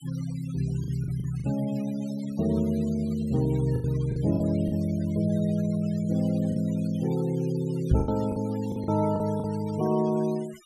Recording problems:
denoising artefacts; signal-to-artefact ratio 21 dB
lost packets; 6% of the sound replaced, filled with the last packet
microphone bump; at 8 s; peak +8 dB vs average level

